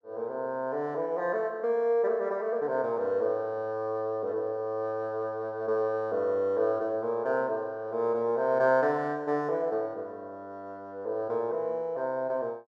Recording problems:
none

